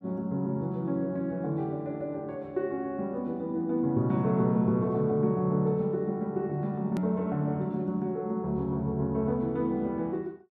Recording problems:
hard cut with a click; at 7 s

